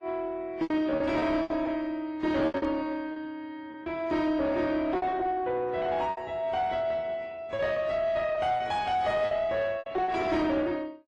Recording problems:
lossy compression; AAC, then AAC, log-spectral distance 2 dB
distortion; soft clipping, signal-to-distortion ratio 11 dB
packet loss; 9% of the sound replaced, filled with repeated pitch periods

